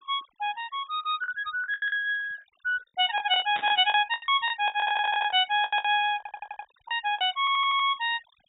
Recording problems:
treble missing; nothing above 4 kHz
denoising artefacts; signal-to-artefact ratio 25 dB
packet loss; 12% of the sound replaced, filled with the last packet
static burst; at 3.5 s; peak -7 dB vs average level
stutter; at 5 s, at 6 s and at 7.5 s

